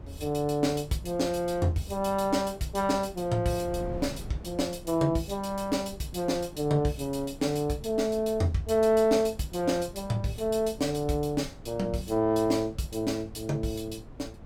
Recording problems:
wind noise; below 230 Hz, SNR 18 dB

